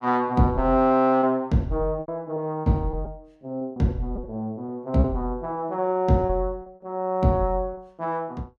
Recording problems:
lost packets; 7% of the sound replaced, filled with repeated pitch periods

